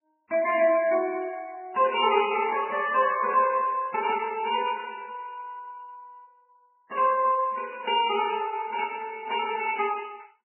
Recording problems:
lossy compression; MP3, then Vorbis, log-spectral distance 4 dB, nothing above 2.5 kHz

